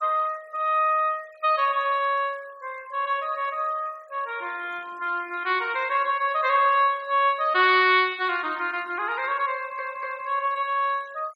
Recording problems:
noise reduction artefacts; signal-to-artefact ratio 26 dB
stutter; at 9.5 s

